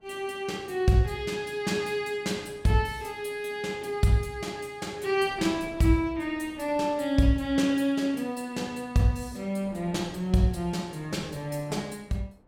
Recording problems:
wind noise; below 580 Hz, SNR 23 dB

